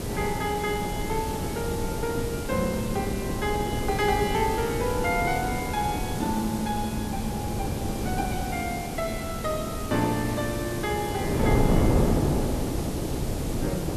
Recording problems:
background hiss; slope -1 dB per octave, SNR 9 dB
wind noise; below 390 Hz, SNR 0 dB

